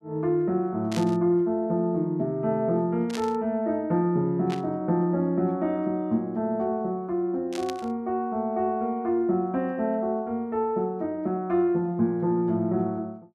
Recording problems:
burst of static; 4 times, first at 1 s; peak -5 dB vs average level

